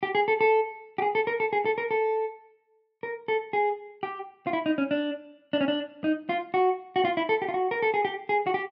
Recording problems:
none

